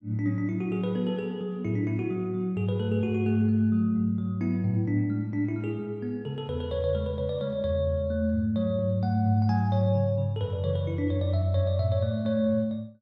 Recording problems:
none

